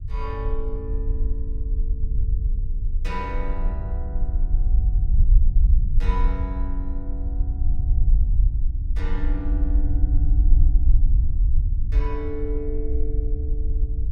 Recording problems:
low-frequency rumble; below 54 Hz, SNR -11 dB

